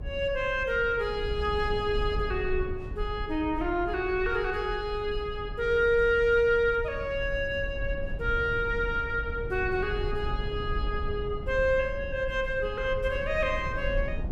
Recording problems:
low-frequency rumble; below 80 Hz, SNR 9 dB

